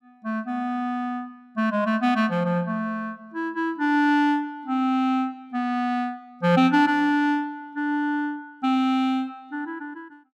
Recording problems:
none

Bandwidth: 14 kHz